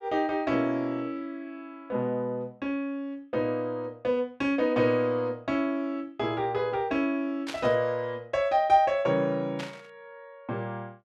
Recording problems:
burst of static; at 7.5 s and at 9.5 s; peak -4 dB vs average level

